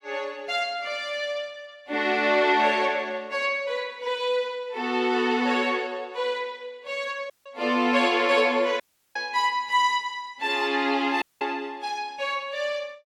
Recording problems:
audio cutting out; at 7.5 s, at 9 s and at 11 s

